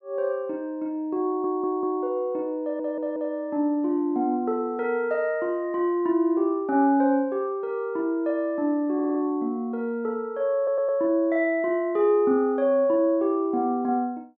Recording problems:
audio stuttering; 4 times, first at 1.5 s

